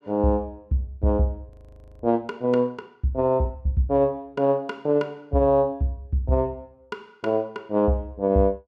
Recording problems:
audio freezing; at 1.5 s for 0.5 s

